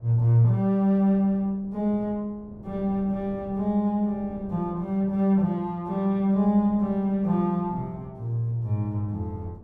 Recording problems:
wind noise; below 290 Hz, SNR 22 dB

